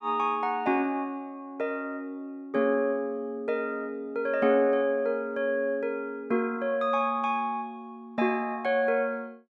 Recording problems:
none

